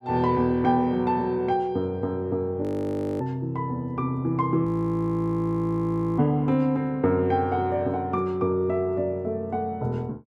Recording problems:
frozen audio; at 2.5 s for 0.5 s and at 4.5 s for 1.5 s

